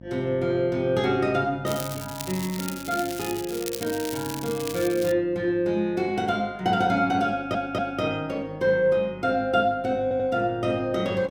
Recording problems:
electrical hum; 50 Hz, harmonics up to 950 Hz, SNR 20 dB
crackling; from 1.5 to 5 s; loose cable, SNR 11 dB
stutter; at 7.5 s and at 10 s

